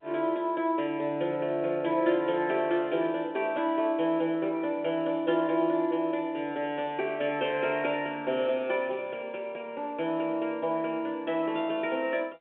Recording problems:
phone line; 260 Hz to 3.5 kHz, G.711

